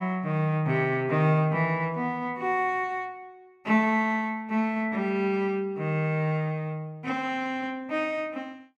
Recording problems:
none

